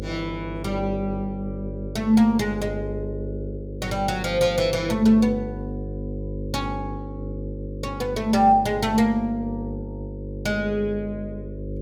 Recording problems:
mains hum; 50 Hz, harmonics up to 550 Hz, SNR 9 dB

